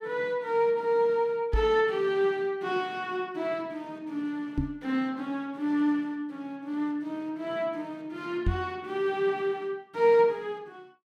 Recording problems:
microphone thump; at 1.5 s, at 4.5 s and at 8.5 s; peak +4 dB vs average level

